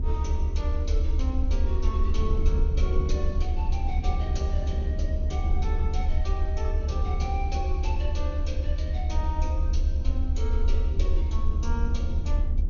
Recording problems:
low-pass filter; nothing above 6.8 kHz
hum; 50 Hz, harmonics up to 400 Hz, SNR 11 dB
background hiss; SNR 27 dB
low-frequency rumble; below 74 Hz, SNR -9 dB
wind noise; below 210 Hz, SNR 2 dB

